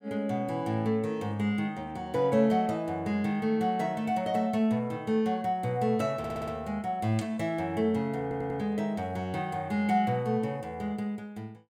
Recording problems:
audio stuttering; at 6 s and at 8 s

